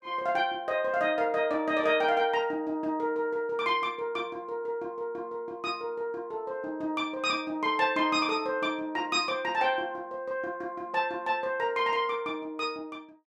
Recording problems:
none

